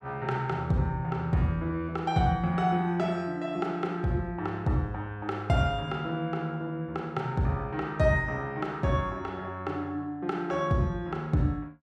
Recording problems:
none

